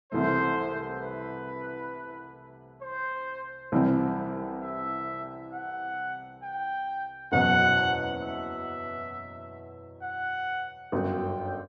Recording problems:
none

